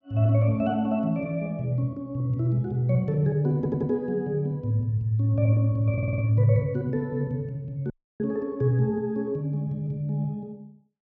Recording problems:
stutter; at 3.5 s and at 6 s
audio cutting out; at 8 s

